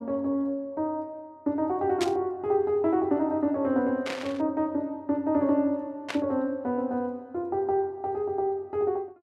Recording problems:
burst of static; at 2 s, at 4 s and at 6 s; peak -1 dB vs average level

